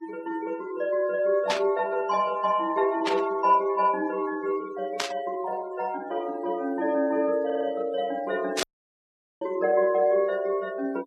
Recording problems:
denoising artefacts; signal-to-artefact ratio 23 dB
static burst; 4 times, first at 1.5 s; peak +3 dB vs average level
audio stuttering; at 7.5 s
dropout; at 8.5 s for 1 s

